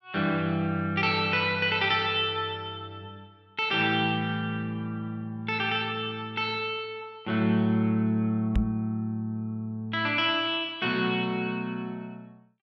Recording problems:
microphone thump; at 8.5 s; peak +5 dB vs average level

